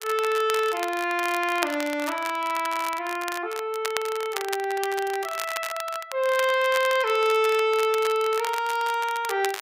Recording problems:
crackle; vinyl, SNR 11 dB

